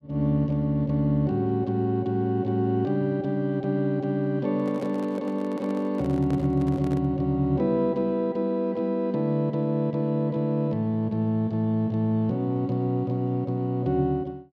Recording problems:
microphone handling noise; from 4.5 to 7 s; peak -9 dB vs average level

